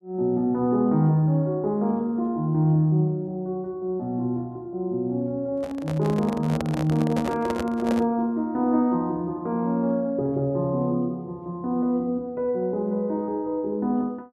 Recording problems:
handling noise; from 5.5 to 8 s; peak -1 dB vs average level

